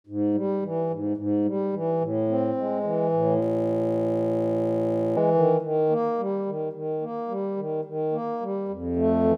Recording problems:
audio freezing; at 3.5 s for 2 s

